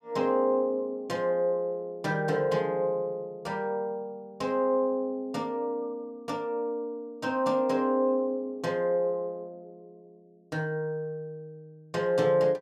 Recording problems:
none

